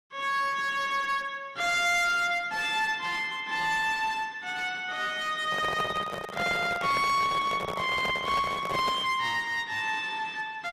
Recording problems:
codec artefacts; AAC, log-spectral distance 3 dB, nothing above 14.6 kHz
distortion; hard clipping, uneven, signal-to-distortion ratio 9 dB
handling noise; from 5.5 to 9 s; peak -2 dB vs average level

